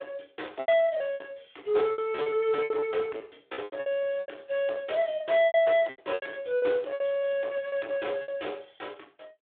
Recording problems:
telephone audio; 260 Hz to 3.7 kHz, Speex
distorted audio; soft clipping, signal-to-distortion ratio 12 dB
packet loss; 13% of the sound replaced, filled with repeated pitch periods

